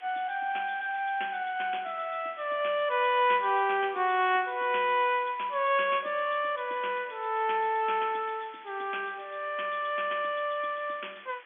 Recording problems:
phone line; 280 Hz to 3.4 kHz, G.711
hiss; SNR 23 dB

